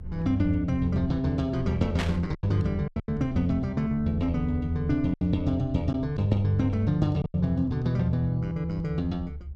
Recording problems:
low-frequency rumble; below 78 Hz, SNR 13 dB
packet loss; 5% of the sound replaced, filled with silence
static burst; at 2 s; peak -1 dB vs average level

